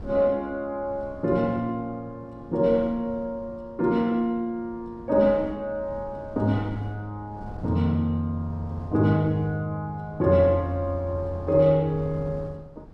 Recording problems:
wind on the microphone; below 290 Hz, SNR 18 dB

